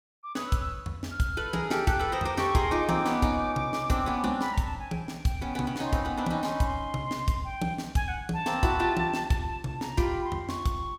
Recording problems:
none

